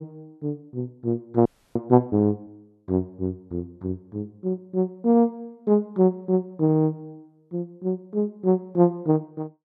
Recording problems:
frozen audio; at 1.5 s

